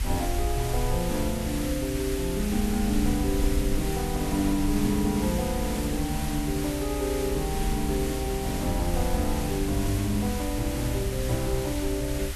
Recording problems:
hiss; slope 0 dB per octave, SNR 8 dB
low-frequency rumble; below 68 Hz, SNR 6 dB
wind on the microphone; below 120 Hz, SNR 13 dB

